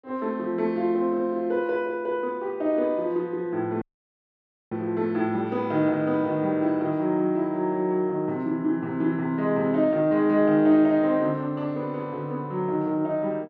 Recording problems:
audio cutting out; at 4 s for 1 s

